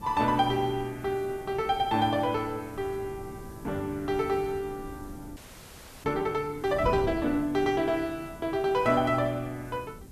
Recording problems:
background hiss; slope +1 dB per octave, SNR 27 dB
wind noise; below 280 Hz, SNR 16 dB
audio freezing; at 5.5 s for 0.5 s

